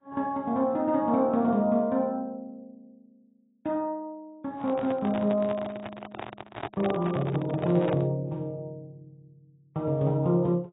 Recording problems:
lossy compression; AAC, log-spectral distance 2 dB
handling noise; from 4.5 to 8 s; peak -2 dB vs average level

